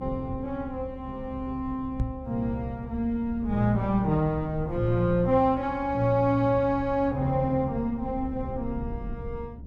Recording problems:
low-frequency rumble; below 140 Hz, SNR 14 dB
knock on the microphone; at 2 s; peak +3 dB vs average level

